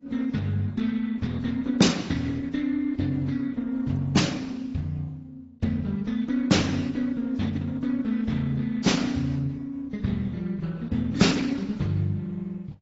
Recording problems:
codec artefacts; Opus, then AAC, log-spectral distance 3 dB, nothing above 7.6 kHz

